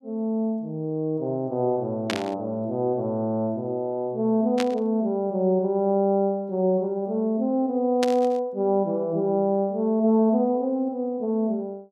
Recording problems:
burst of static; at 2 s, at 4.5 s and at 8 s; peak 0 dB vs average level

